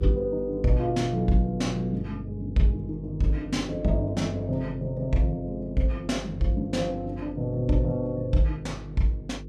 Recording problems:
electrical hum; 50 Hz, harmonics up to 500 Hz, SNR 13 dB

